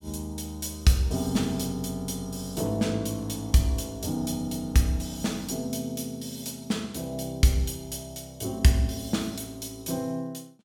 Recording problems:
none

